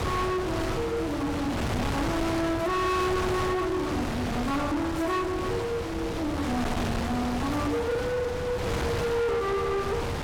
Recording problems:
distorted audio; soft clipping, signal-to-distortion ratio 8 dB
wind noise; below 1.3 kHz, SNR 3 dB

